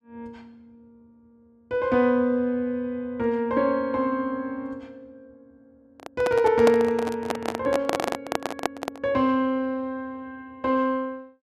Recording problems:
handling noise; from 6 to 9 s; peak +4 dB vs average level

